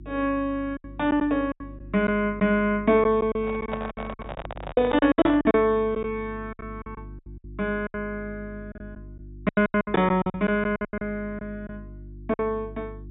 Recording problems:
treble cut off; nothing above 4 kHz
hum; 50 Hz, harmonics up to 350 Hz, SNR 18 dB
lost packets; 14% of the sound replaced, filled with silence
microphone handling noise; from 3.5 to 5.5 s; peak -3 dB vs average level

